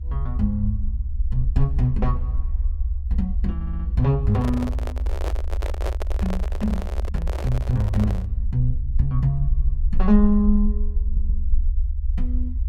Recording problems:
rumble; below 68 Hz, SNR 2 dB
stutter; at 3.5 s, at 9.5 s and at 11 s
handling noise; from 4.5 to 8.5 s; peak -2 dB vs average level

